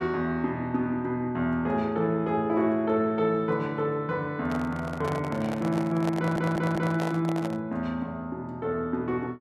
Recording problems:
microphone handling noise; from 4.5 to 7.5 s; peak -2 dB vs average level
audio stuttering; at 6 s

